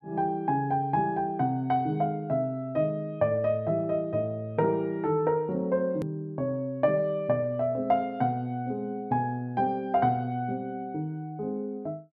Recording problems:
click at an edit; at 6 s

